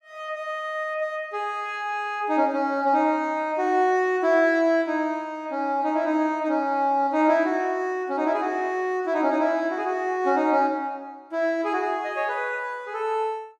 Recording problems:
none

